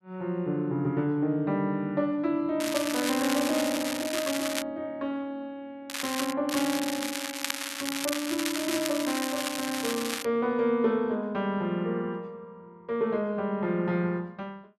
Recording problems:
crackle; from 2.5 to 4.5 s, at 6 s and from 6.5 to 10 s; loose cable, SNR 3 dB

